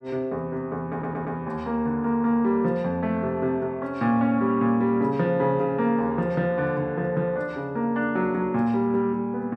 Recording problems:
audio stuttering; at 1 s

